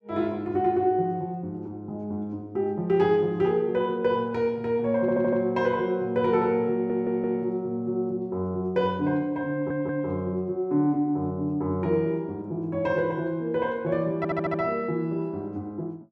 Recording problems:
stutter; 4 times, first at 5 s

